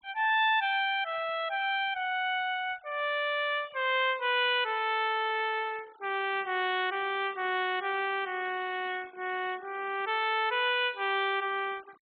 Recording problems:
treble cut off; nothing above 4 kHz
denoising artefacts; signal-to-artefact ratio 23 dB

